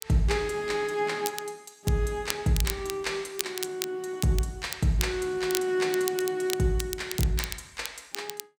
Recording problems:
crackling; vinyl, SNR 7 dB

